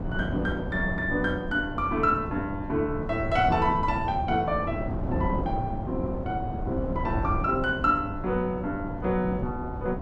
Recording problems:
wind noise; below 300 Hz, SNR 6 dB

